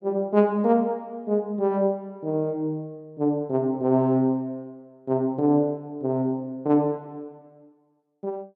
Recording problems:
none

